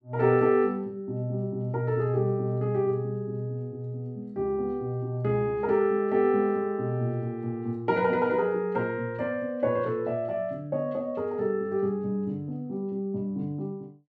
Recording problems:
none

